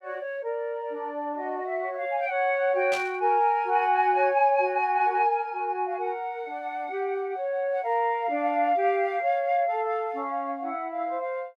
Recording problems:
static burst; at 3 s; peak -4 dB vs average level

